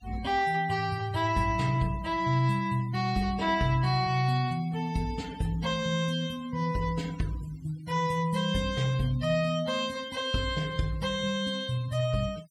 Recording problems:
denoising artefacts; signal-to-artefact ratio 21 dB

